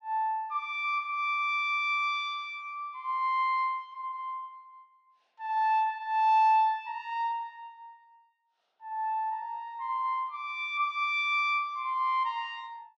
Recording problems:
none

